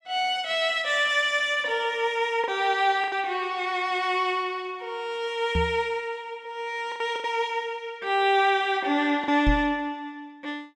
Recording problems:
packet loss; 3% of the sound replaced, filled with the last packet
microphone thump; at 5.5 s and at 9.5 s; peak +3 dB vs average level

